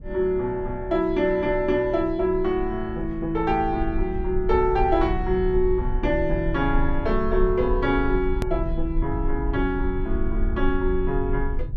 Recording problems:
rumble; below 52 Hz, strongest tone 24 Hz, SNR 7 dB
edit click; at 8.5 s

